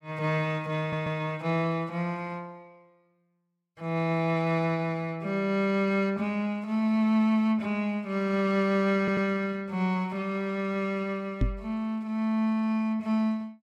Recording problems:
audio stuttering; at 1 s and at 9 s
microphone thump; at 11 s; peak +5 dB vs average level

